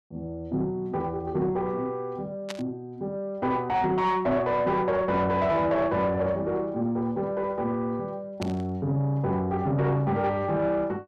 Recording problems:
distortion; soft clipping, signal-to-distortion ratio 11 dB
static burst; at 2.5 s and at 8.5 s; peak -4 dB vs average level

